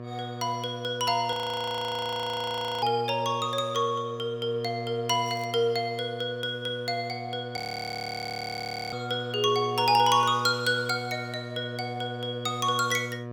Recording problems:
hum; 60 Hz, harmonics up to 1.8 kHz, SNR 11 dB
audio freezing; at 1.5 s for 1.5 s and at 7.5 s for 1.5 s
crackling; at 5.5 s; loose cable, SNR 27 dB

